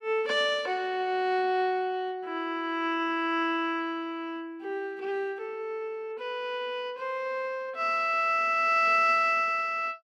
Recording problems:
none

